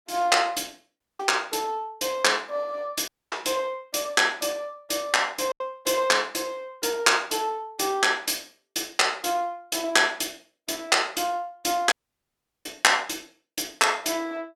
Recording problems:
packet loss; 1.3% of the sound replaced, filled with silence
audio cutting out; at 1 s, at 3 s and at 12 s for 0.5 s

